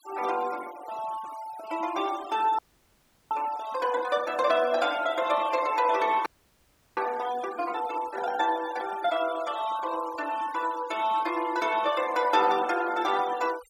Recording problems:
noise reduction artefacts; signal-to-artefact ratio 16 dB
frozen audio; at 2.5 s for 0.5 s and at 6.5 s for 0.5 s

